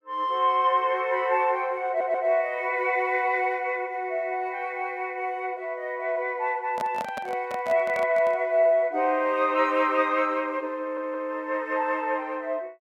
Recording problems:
stutter; at 2 s and at 11 s
handling noise; from 6.5 to 8.5 s; peak -5 dB vs average level

